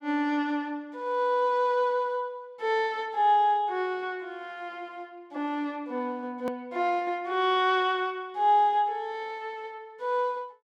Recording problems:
click at an edit; at 6.5 s

